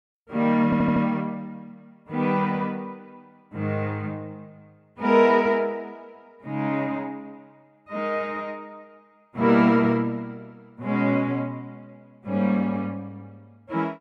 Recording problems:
stutter; at 0.5 s

